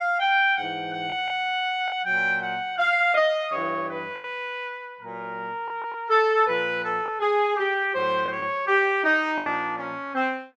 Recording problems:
packet loss; 3% of the sound replaced, filled with the last packet

